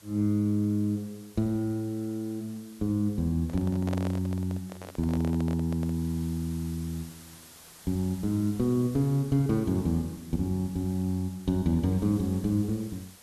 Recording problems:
background hiss; slope -1 dB per octave, SNR 21 dB
microphone handling noise; from 3.5 to 6 s; peak -4 dB vs average level

